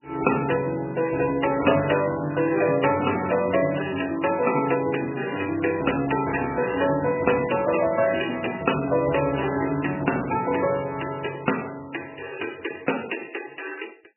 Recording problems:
codec artefacts; MP3, log-spectral distance 12 dB, nothing above 2.9 kHz

